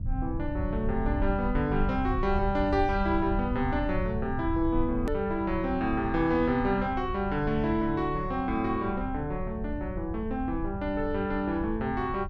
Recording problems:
hum; 50 Hz, harmonics up to 700 Hz, SNR 21 dB
rumble; below 84 Hz, SNR 8 dB
edit click; at 5 s

